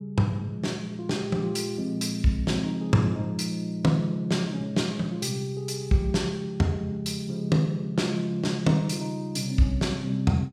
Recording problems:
none

